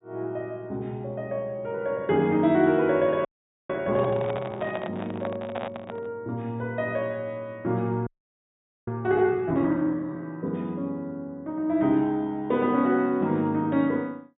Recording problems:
treble missing; nothing above 4 kHz
audio freezing; at 3.5 s and at 8 s for 1 s
microphone handling noise; from 4 to 6 s; peak -3 dB vs average level

